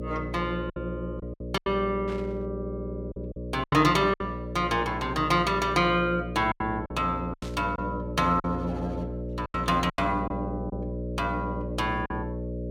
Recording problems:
electrical hum; 60 Hz, harmonics up to 600 Hz, SNR 7 dB
lost packets; 7% of the sound replaced, filled with silence
burst of static; at 2 s and at 7.5 s; peak -12 dB vs average level

